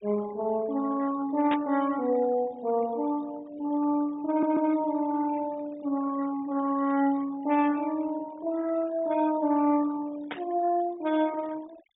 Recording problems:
treble missing; nothing above 4 kHz
noise reduction artefacts; signal-to-artefact ratio 20 dB
burst of static; at 1.5 s and at 10 s; peak -3 dB vs average level
audio stuttering; at 4.5 s

